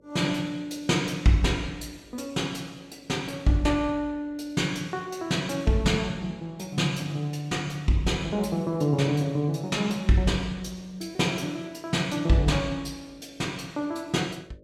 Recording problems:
electrical hum; 50 Hz, harmonics up to 600 Hz, SNR 29 dB

